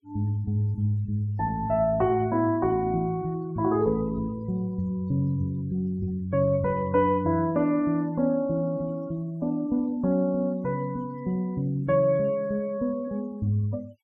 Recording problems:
denoising artefacts; signal-to-artefact ratio 28 dB

